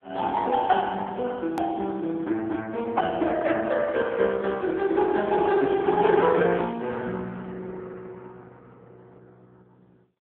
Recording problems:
telephone audio; 190 Hz to 3.6 kHz, AMR-NB
hard cut with a click; at 1.5 s

